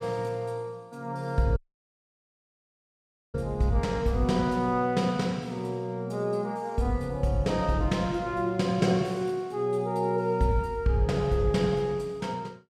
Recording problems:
dropout; at 1.5 s for 2 s

